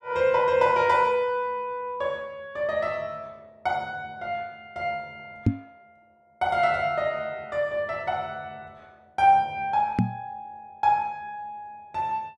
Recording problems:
microphone bump; at 5.5 s and at 10 s; peak +8 dB vs average level

